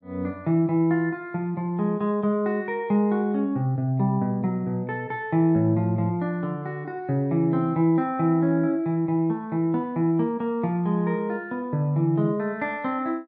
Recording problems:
none

